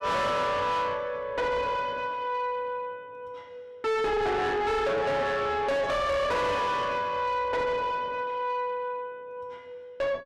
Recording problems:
distorted audio; soft clipping, signal-to-distortion ratio 5 dB

